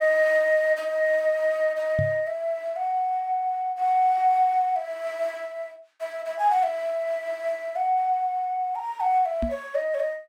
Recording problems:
microphone thump; at 2 s and at 9.5 s; peak 0 dB vs average level

